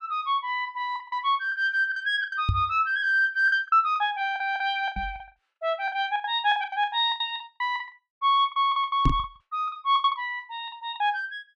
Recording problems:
packet loss; 15% of the sound replaced, filled with the last packet
knock on the microphone; at 2.5 s, at 5 s and at 9 s; peak +5 dB vs average level

